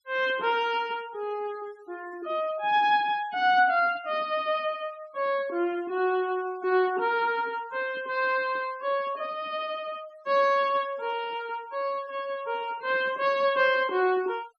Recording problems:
denoising artefacts; signal-to-artefact ratio 24 dB

